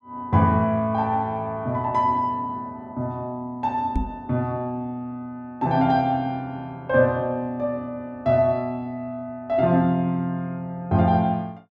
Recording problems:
microphone bump; at 4 s; peak +3 dB vs average level

